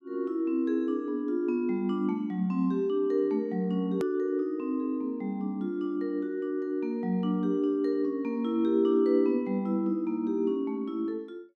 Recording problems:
click at an edit; at 4 s

